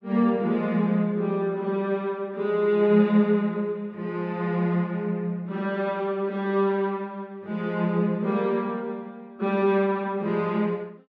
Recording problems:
none

